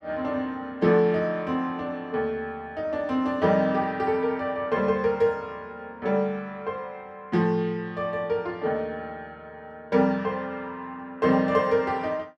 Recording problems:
none

